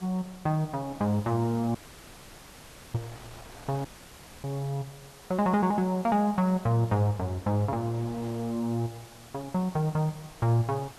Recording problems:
hiss; slope -1 dB per octave, SNR 23 dB
wind noise; below 1.4 kHz, SNR 24 dB
dropout; at 2 s for 1 s and at 4 s for 0.5 s

